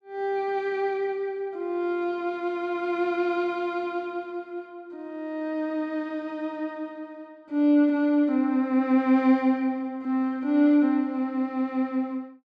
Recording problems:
none

